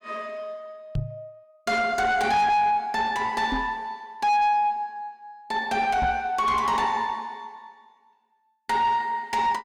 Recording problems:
distorted audio; soft clipping, signal-to-distortion ratio 7 dB
knock on the microphone; at 1 s, at 3.5 s and at 6 s; peak 0 dB vs average level

